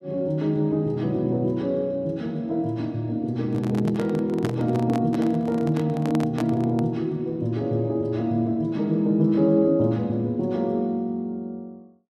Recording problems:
microphone handling noise; from 3.5 to 7 s; peak -2 dB vs average level

